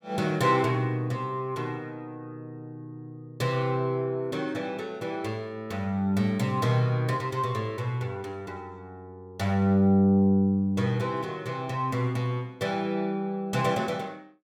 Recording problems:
none

